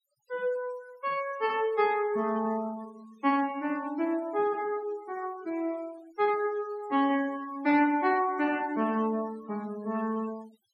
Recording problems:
noise reduction artefacts; signal-to-artefact ratio 21 dB

